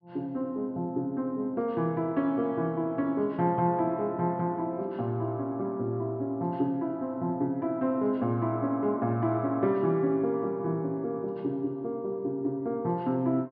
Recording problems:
low-pass filter; nothing above 5.5 kHz

